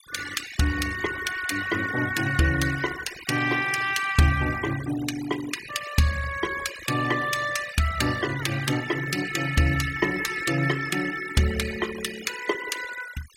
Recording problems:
denoising artefacts; signal-to-artefact ratio 12 dB

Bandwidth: 16 kHz